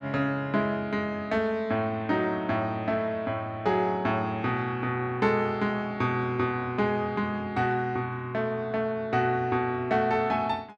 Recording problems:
none

